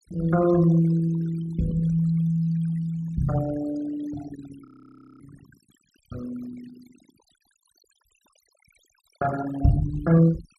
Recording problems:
noise reduction artefacts; signal-to-artefact ratio 19 dB
audio freezing; at 4.5 s for 0.5 s

